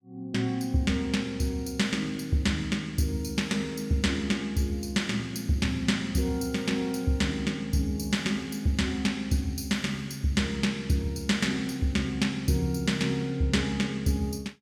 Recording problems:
none

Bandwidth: 18 kHz